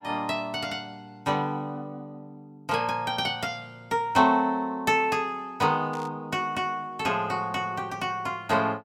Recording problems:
burst of static; at 6 s; peak -15 dB vs average level

